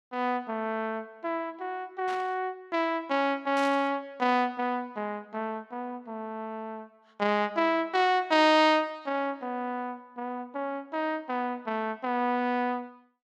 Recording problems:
burst of static; at 2 s and at 3.5 s; peak -9 dB vs average level

